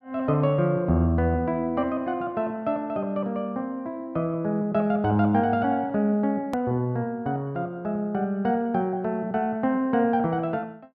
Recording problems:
edit click; at 6.5 s

